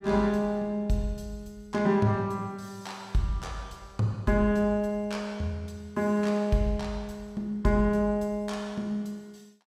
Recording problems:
none

